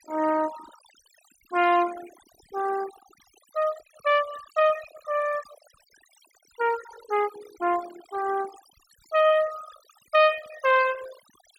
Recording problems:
noise reduction artefacts; signal-to-artefact ratio 16 dB

